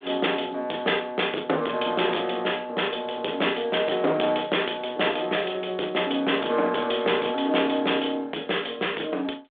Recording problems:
phone line; 280 Hz to 3.6 kHz, G.726
distorted audio; hard clipping, uneven, signal-to-distortion ratio 14 dB

